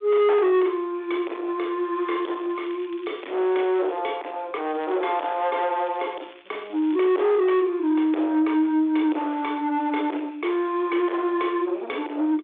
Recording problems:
telephone audio; 260 Hz to 3.6 kHz, G.726
distorted audio; soft clipping, signal-to-distortion ratio 8 dB
crackle; from 2 to 4 s and from 5 to 7.5 s; loose cable, SNR 27 dB

